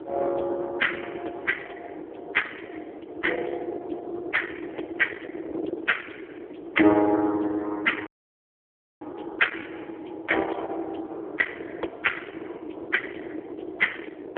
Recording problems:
phone line; 260 Hz to 3.3 kHz, AMR-NB
distorted audio; soft clipping, signal-to-distortion ratio 16 dB
wind on the microphone; below 840 Hz, SNR 10 dB
audio cutting out; at 8 s for 1 s

